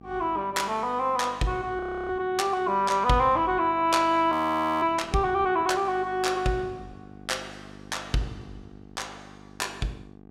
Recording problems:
hum; 50 Hz, harmonics up to 1.3 kHz, SNR 21 dB
audio freezing; at 2 s and at 4.5 s for 0.5 s

